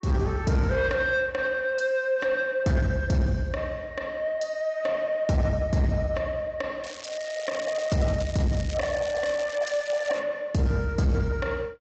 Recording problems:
low-pass filter; nothing above 7.3 kHz
lossy codec; AAC, log-spectral distance 2 dB
distortion; soft clipping, signal-to-distortion ratio 11 dB
crackling; from 7 to 8 s and from 8 to 10 s; loose cable, SNR 15 dB

